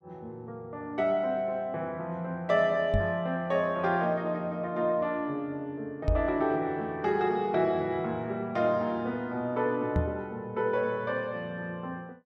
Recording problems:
microphone bump; at 3 s, at 6 s and at 10 s; peak +5 dB vs average level

